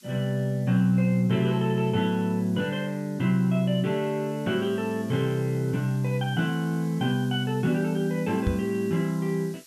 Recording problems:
background hiss; slope +4 dB per octave, SNR 25 dB
knock on the microphone; at 8.5 s; peak +4 dB vs average level

